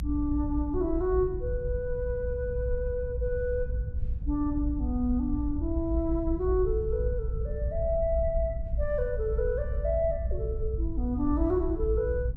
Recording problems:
low-frequency rumble; below 68 Hz, SNR 3 dB

